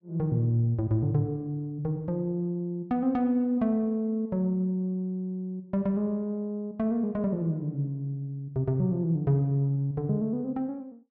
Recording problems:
none

